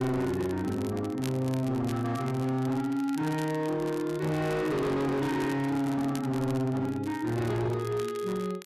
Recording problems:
distorted audio; hard clipping, signal-to-distortion ratio 8 dB
crackle; vinyl, SNR 19 dB

